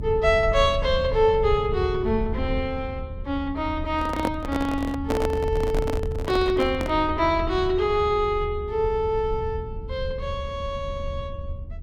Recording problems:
low-frequency rumble; below 86 Hz, SNR 8 dB
microphone handling noise; from 4 to 7 s; peak +2 dB vs average level

